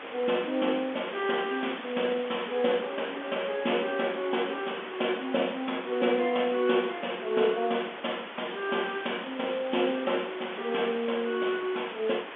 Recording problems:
telephone audio; 220 Hz to 3.5 kHz, G.711
background hiss; SNR 11 dB
crackle; from 1 to 2.5 s and from 8.5 to 11 s; loose cable, SNR 20 dB

